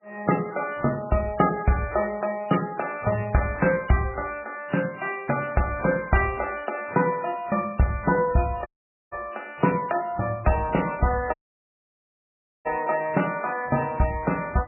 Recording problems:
codec artefacts; MP3, log-spectral distance 5 dB, nothing above 2.4 kHz
audio cutting out; at 8.5 s and at 11 s for 1.5 s

